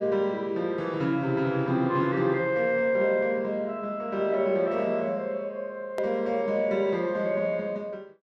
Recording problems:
edit click; at 6 s

